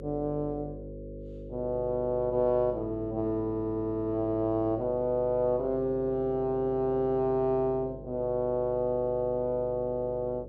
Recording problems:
hum; 50 Hz, harmonics up to 550 Hz, SNR 14 dB

